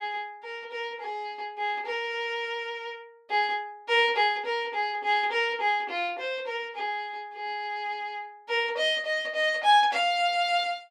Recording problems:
none

